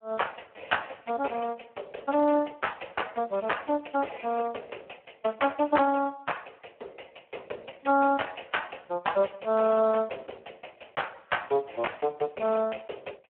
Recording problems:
telephone audio; 320 Hz to 3.1 kHz, Speex

